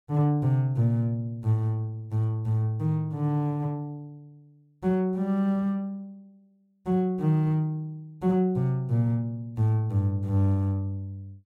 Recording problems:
none

